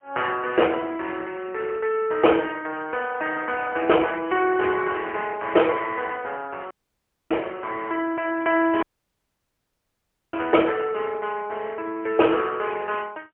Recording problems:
telephone audio; 280 Hz to 3.1 kHz, AMR-NB, then MP3
dropout; at 6.5 s for 0.5 s and at 9 s for 1.5 s

